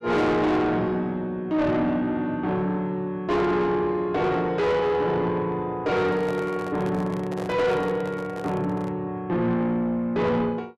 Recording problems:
distortion; soft clipping, signal-to-distortion ratio 8 dB
handling noise; from 6 to 9 s; peak -6 dB vs average level

